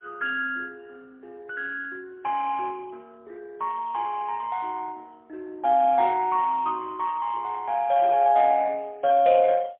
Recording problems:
telephone audio; 280 Hz to 3.2 kHz, AMR-NB, then MP3

